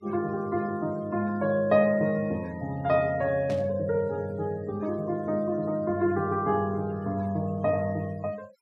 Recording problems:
denoising artefacts; signal-to-artefact ratio 25 dB
static burst; at 3.5 s; peak -12 dB vs average level

